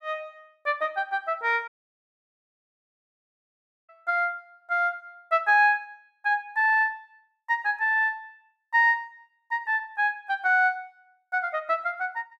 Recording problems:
audio cutting out; at 1.5 s for 2 s

